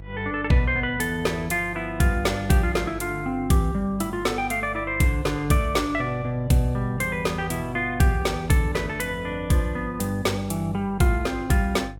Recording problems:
hum; 50 Hz, harmonics up to 650 Hz, SNR 16 dB

